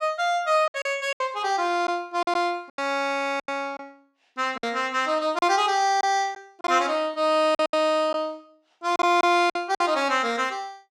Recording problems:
packet loss; 9% of the sound replaced, filled with silence

